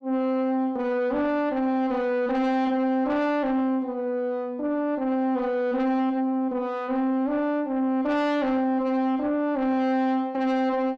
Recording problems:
distorted audio; soft clipping, signal-to-distortion ratio 11 dB

